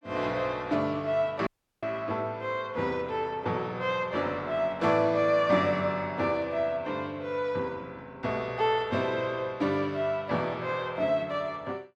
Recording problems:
audio cutting out; at 1.5 s

